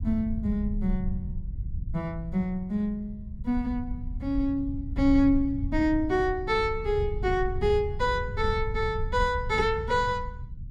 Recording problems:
low-frequency rumble; below 92 Hz, SNR 8 dB

